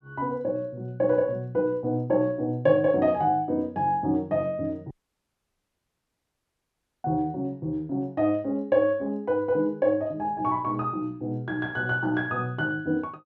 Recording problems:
audio cutting out; at 5 s for 2 s

